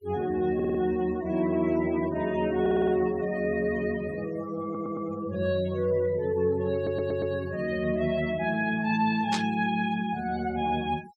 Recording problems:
denoising artefacts; signal-to-artefact ratio 19 dB
audio stuttering; 4 times, first at 0.5 s
burst of static; at 9.5 s; peak 0 dB vs average level

